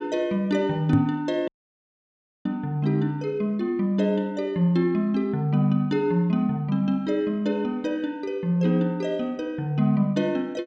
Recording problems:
microphone thump; at 1 s; peak +7 dB vs average level
audio cutting out; at 1.5 s for 1 s

